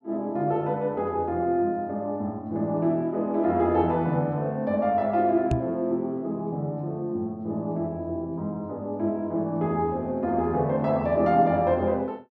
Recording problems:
microphone thump; at 5.5 s; peak +3 dB vs average level

